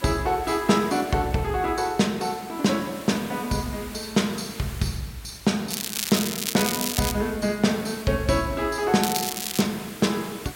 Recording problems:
hiss; slope -2 dB per octave, SNR 16 dB
crackling; from 5.5 to 7 s and at 9 s; loose cable, SNR 3 dB

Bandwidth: 16.5 kHz